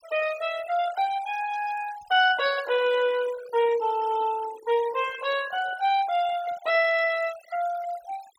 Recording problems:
noise reduction artefacts; signal-to-artefact ratio 16 dB

